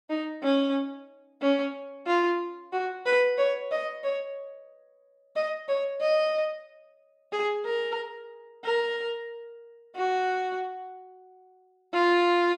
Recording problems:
none

